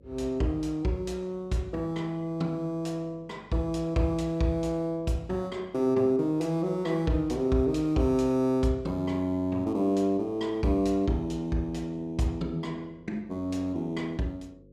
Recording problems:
mains hum; 50 Hz, harmonics up to 550 Hz, SNR 27 dB

